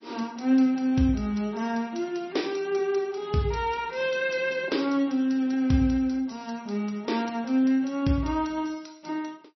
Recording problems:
codec artefacts; MP3, log-spectral distance 5 dB, nothing above 5.8 kHz

